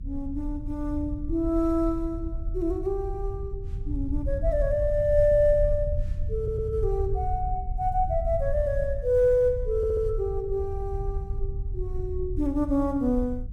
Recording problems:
rumble; below 76 Hz, SNR 6 dB
stutter; at 6.5 s and at 10 s

